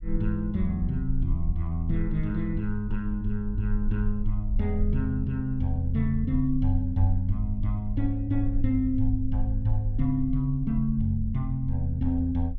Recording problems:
rumble; below 46 Hz, SNR 7 dB

